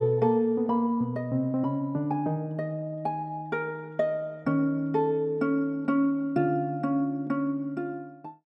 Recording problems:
none

